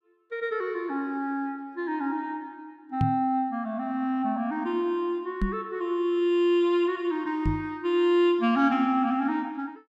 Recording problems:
microphone bump; at 3 s, at 5.5 s and at 7.5 s; peak +4 dB vs average level

